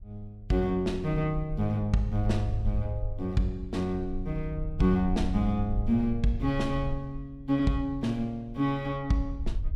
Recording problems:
wind noise; below 62 Hz, SNR 9 dB

